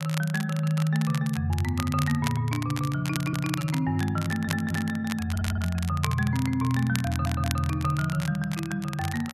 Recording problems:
crackling; vinyl, SNR 11 dB
stutter; 4 times, first at 3 s

